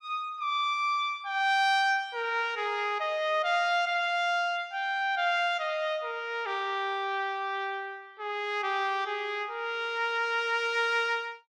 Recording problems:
none

